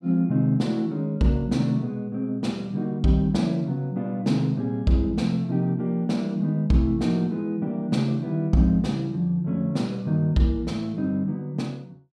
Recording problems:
none

